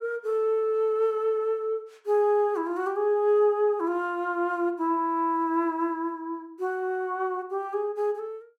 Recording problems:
none

